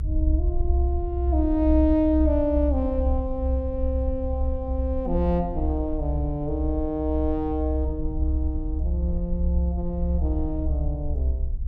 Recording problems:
rumble; below 68 Hz, strongest tone 66 Hz, SNR 0 dB

